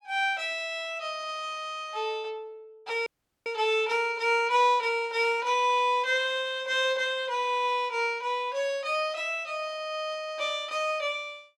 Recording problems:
audio cutting out; at 3 s

